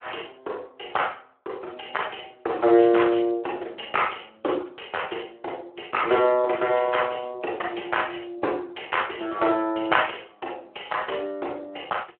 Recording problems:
phone line; 300 Hz to 3.3 kHz, Speex

